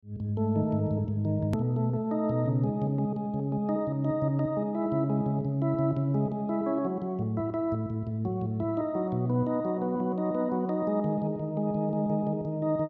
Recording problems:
click at an edit; at 1.5 s

